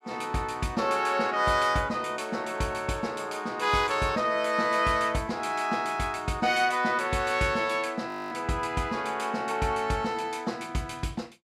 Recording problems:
audio freezing; at 8 s

